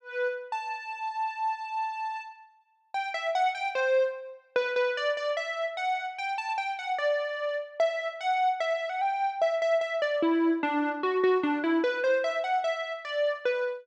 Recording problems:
none

